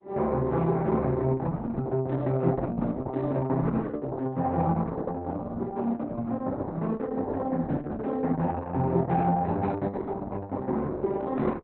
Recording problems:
codec artefacts; Opus, log-spectral distance 3 dB, nothing above 4 kHz

